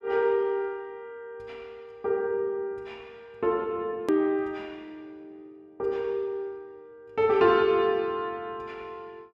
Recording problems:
click at an edit; at 4 s

